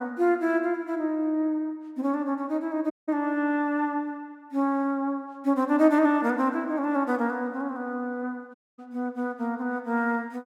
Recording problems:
audio cutting out; at 3 s and at 8.5 s

